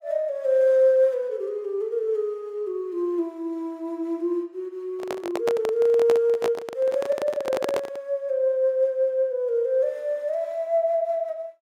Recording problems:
microphone handling noise; from 5 to 8 s; peak +1 dB vs average level

